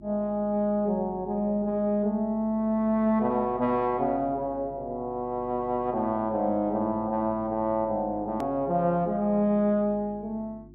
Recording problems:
hum; 50 Hz, harmonics up to 350 Hz, SNR 21 dB
edit click; at 8.5 s

